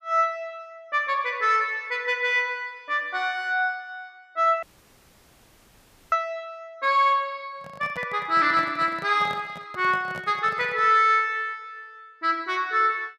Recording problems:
audio cutting out; at 4.5 s for 1.5 s
handling noise; from 7.5 to 11 s; peak -11 dB vs average level

